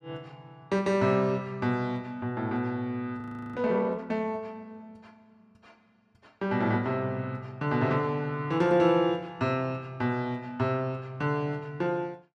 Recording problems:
audio freezing; at 3 s

